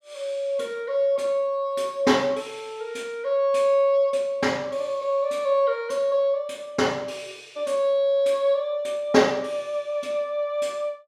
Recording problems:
none

